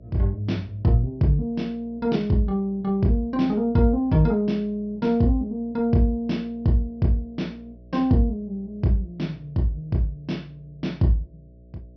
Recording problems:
treble missing; nothing above 5.8 kHz
hum; 60 Hz, harmonics up to 660 Hz, SNR 24 dB

